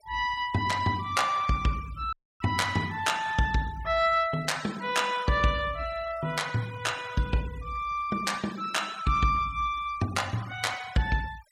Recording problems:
denoising artefacts; signal-to-artefact ratio 18 dB
audio cutting out; at 2 s

